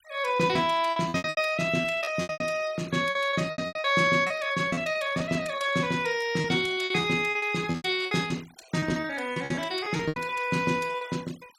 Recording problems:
noise reduction artefacts; signal-to-artefact ratio 21 dB
packet loss; 16% of the sound replaced, filled with repeated pitch periods

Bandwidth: 16.5 kHz